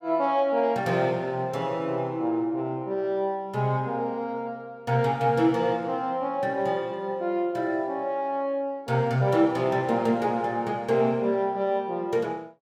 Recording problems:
none

